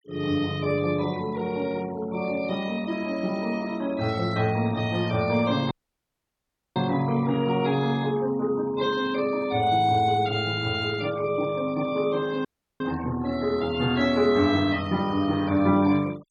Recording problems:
noise reduction artefacts; signal-to-artefact ratio 21 dB
audio cutting out; at 5.5 s for 1 s and at 12 s

